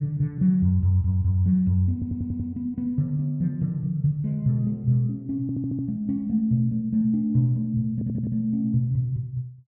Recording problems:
audio stuttering; at 2 s, at 5.5 s and at 8 s

